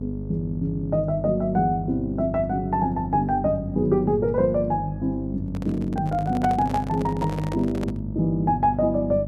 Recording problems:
electrical hum; 50 Hz, harmonics up to 650 Hz, SNR 9 dB
microphone handling noise; from 5.5 to 8 s; peak -3 dB vs average level

